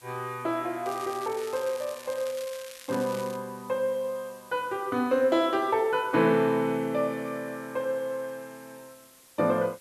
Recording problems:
background hiss; slope 0 dB per octave, SNR 24 dB
crackling; from 1 to 3.5 s; loose cable, SNR 17 dB

